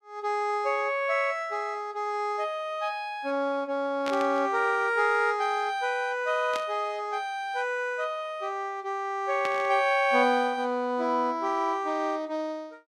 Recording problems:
static burst; at 4 s, at 6.5 s and at 9.5 s; peak -4 dB vs average level

